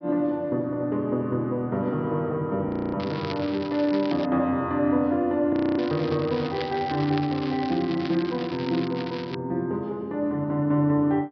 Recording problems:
low-pass filter; nothing above 5.5 kHz
frozen audio; at 2.5 s and at 5.5 s
crackle; from 3 to 4.5 s and from 6 to 9.5 s; loose cable, SNR 14 dB

